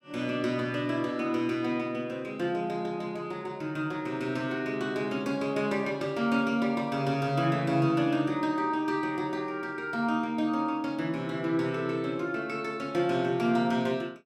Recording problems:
none

